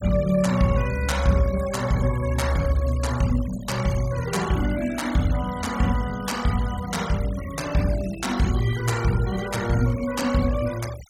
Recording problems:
noise reduction artefacts; signal-to-artefact ratio 15 dB

